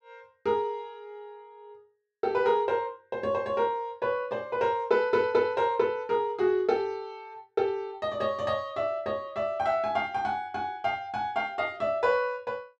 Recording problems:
none

